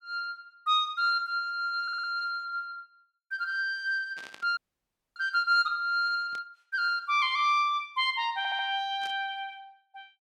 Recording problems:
audio stuttering; at 2 s and at 8.5 s
burst of static; at 4 s, at 6.5 s and at 9 s; peak -12 dB vs average level
frozen audio; at 4.5 s for 0.5 s

